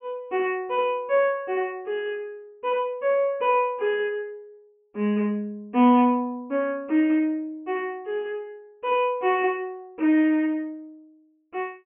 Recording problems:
treble cut off; nothing above 3.1 kHz

